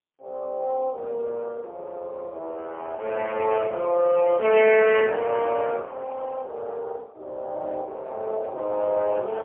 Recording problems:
phone line; 370 Hz to 3.1 kHz, AMR-NB, then MP3

